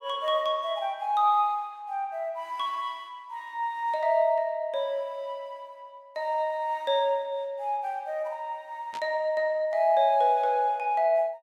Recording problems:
burst of static; at 9 s; peak -11 dB vs average level

